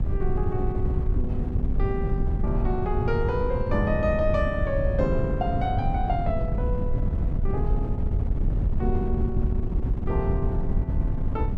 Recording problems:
wind on the microphone; below 110 Hz, SNR -2 dB

